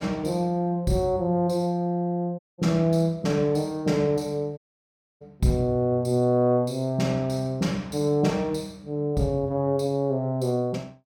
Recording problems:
dropout; at 2.5 s and at 4.5 s for 0.5 s

